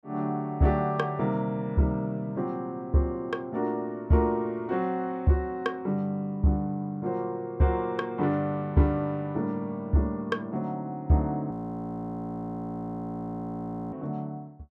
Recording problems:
audio freezing; at 12 s for 2.5 s

